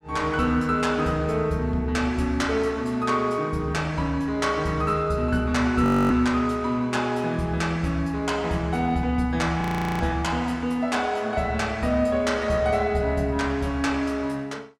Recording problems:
frozen audio; at 6 s and at 9.5 s

